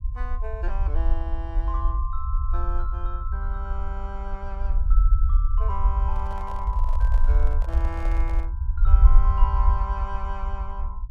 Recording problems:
rumble; below 56 Hz, SNR -10 dB
handling noise; from 6 to 8.5 s; peak -2 dB vs average level

